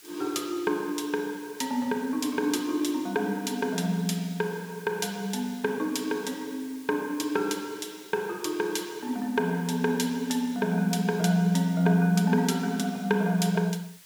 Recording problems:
hiss; slope +2 dB per octave, SNR 21 dB

